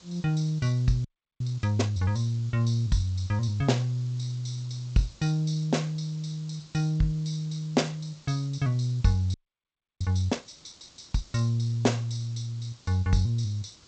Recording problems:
lossy codec; G.722, log-spectral distance 5 dB, nothing above 8 kHz
background hiss; SNR 25 dB
audio freezing; at 1 s and at 9.5 s for 0.5 s

